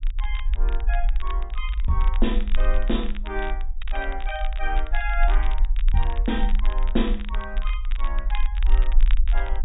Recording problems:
treble cut off; nothing above 4 kHz
rumble; below 40 Hz, strongest tone 20 Hz, SNR -4 dB
crackling; vinyl, SNR 12 dB

